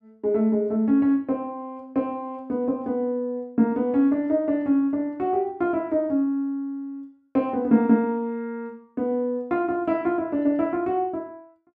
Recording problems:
none

